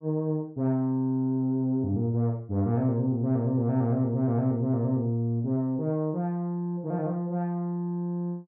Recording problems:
none

